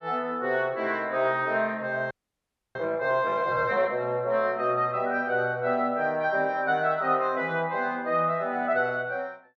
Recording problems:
frozen audio; at 2 s for 0.5 s

